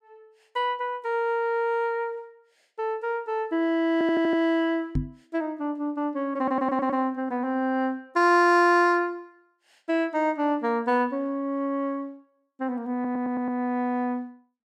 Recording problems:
stutter; at 4 s, at 6.5 s and at 13 s
microphone thump; at 5 s; peak +2 dB vs average level

